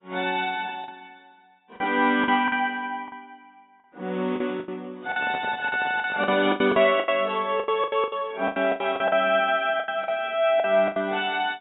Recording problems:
lossy codec; AAC, log-spectral distance 2 dB, nothing above 3.4 kHz
lost packets; 14% of the sound replaced, filled with the last packet
microphone handling noise; from 5 to 6.5 s; peak -8 dB vs average level

